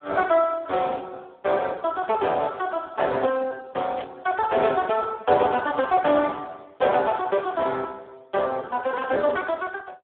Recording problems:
telephone audio; 300 Hz to 3.4 kHz, Speex
burst of static; at 4 s; peak -13 dB vs average level

